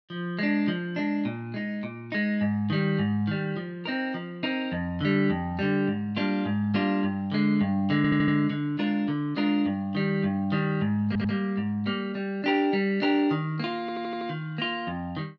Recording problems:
audio stuttering; at 8 s, at 11 s and at 14 s

